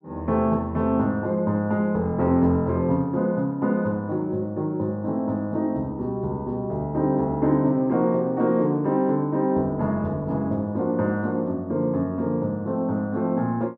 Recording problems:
none

